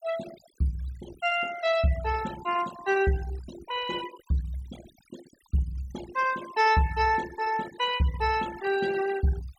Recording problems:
denoising artefacts; signal-to-artefact ratio 15 dB

